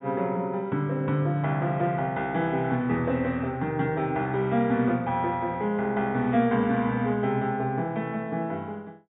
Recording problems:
treble cut off; nothing above 4 kHz

